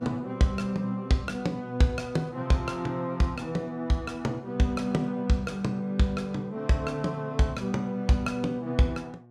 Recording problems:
hum; 60 Hz, harmonics up to 1.1 kHz, SNR 23 dB

